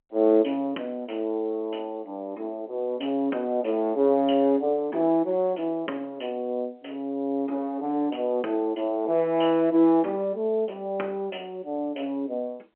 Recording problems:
telephone audio; 240 Hz to 3.7 kHz, G.711

